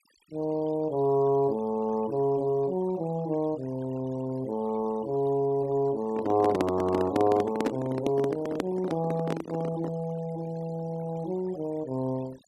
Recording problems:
denoising artefacts; signal-to-artefact ratio 22 dB
microphone handling noise; from 6 to 10 s; peak +4 dB vs average level

